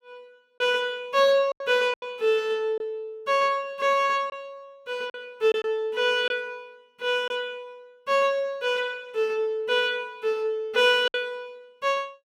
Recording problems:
packet loss; 4% of the sound replaced, filled with silence

